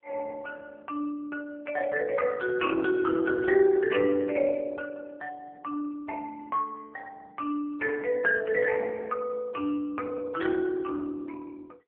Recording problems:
telephone audio; 260 Hz to 2.1 kHz, AMR-NB

